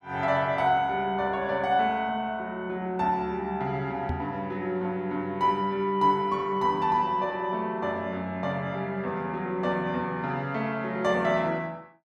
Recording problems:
microphone thump; at 4 s; peak -1 dB vs average level

